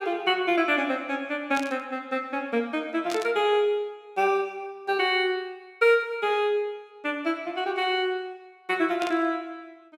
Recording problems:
static burst; at 1.5 s, at 3 s and at 9 s; peak -5 dB vs average level

